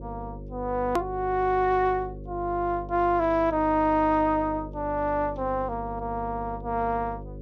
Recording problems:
electrical hum; 50 Hz, harmonics up to 550 Hz, SNR 14 dB
click at an edit; at 1 s

